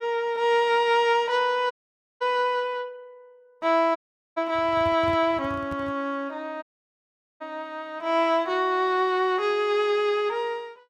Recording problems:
dropout; at 1.5 s, at 4 s and at 6.5 s for 1 s
microphone handling noise; from 4.5 to 6 s; peak -8 dB vs average level

